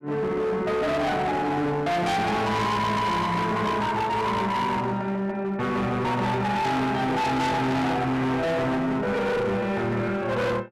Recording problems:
distorted audio; hard clipping, uneven, signal-to-distortion ratio 6 dB

